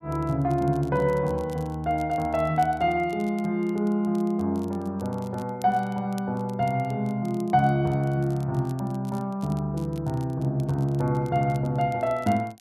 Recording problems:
crackle; vinyl, SNR 27 dB

